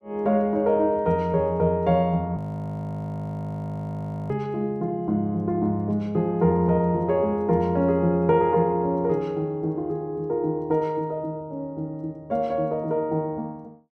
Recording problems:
audio freezing; at 2.5 s for 2 s

